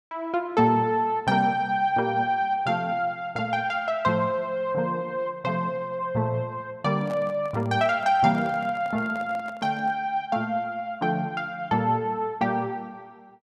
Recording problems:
handling noise; from 7 to 10 s; peak -10 dB vs average level

